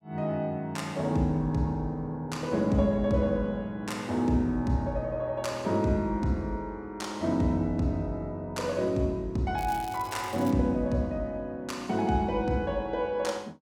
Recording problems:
crackle; at 9.5 s; loose cable, SNR 19 dB

